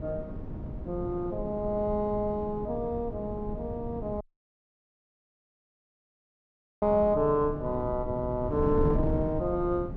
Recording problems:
wind noise; below 230 Hz, SNR 7 dB
dropout; at 4 s for 2.5 s

